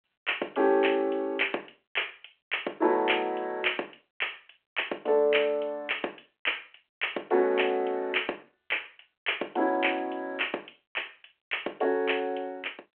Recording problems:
phone line; 300 Hz to 3.3 kHz, G.726

